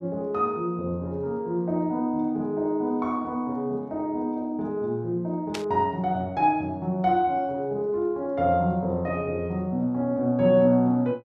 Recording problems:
burst of static; at 5.5 s; peak -3 dB vs average level

